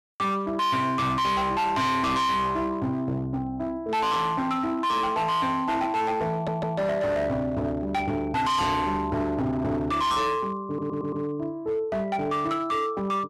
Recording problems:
distortion; hard clipping, signal-to-distortion ratio 7 dB
audio stuttering; at 6.5 s and at 11 s

